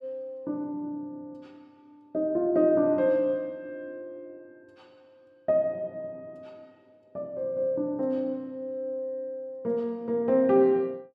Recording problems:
none

